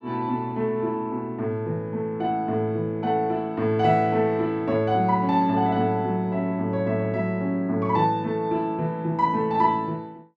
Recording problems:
none

